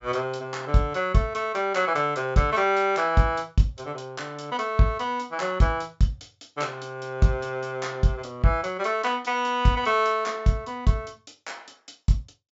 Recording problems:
treble cut off; nothing above 8 kHz

